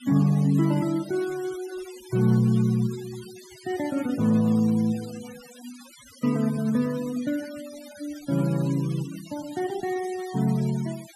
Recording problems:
denoising artefacts; signal-to-artefact ratio 19 dB

